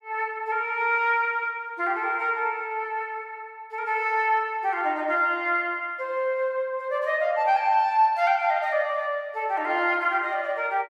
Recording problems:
none

